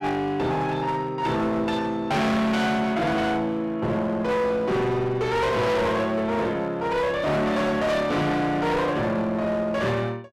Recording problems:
distortion; hard clipping, uneven, signal-to-distortion ratio 6 dB

